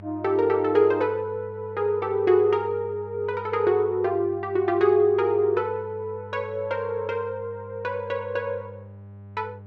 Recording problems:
electrical hum; 50 Hz, harmonics up to 800 Hz, SNR 18 dB

